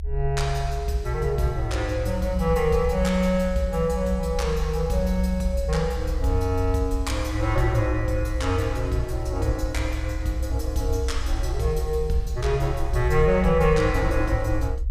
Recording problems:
low-frequency rumble; below 64 Hz, SNR 5 dB

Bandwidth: 15.5 kHz